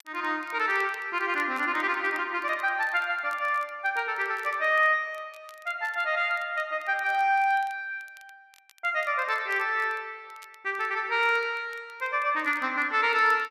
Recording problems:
crackling; vinyl, SNR 29 dB

